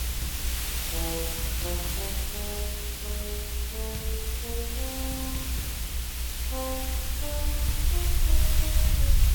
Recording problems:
electrical hum; 60 Hz, harmonics up to 540 Hz, SNR 7 dB
hiss; slope +1 dB per octave, SNR -7 dB
low-frequency rumble; below 62 Hz, SNR -7 dB

